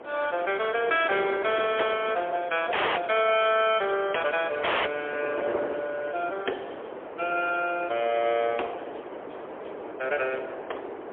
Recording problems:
phone line; 320 Hz to 3.5 kHz, AMR-NB, then MP3
wind noise; below 810 Hz, SNR 10 dB
dropout; at 2.5 s and at 4.5 s

